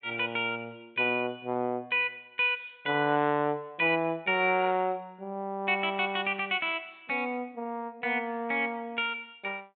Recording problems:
treble missing; nothing above 4 kHz

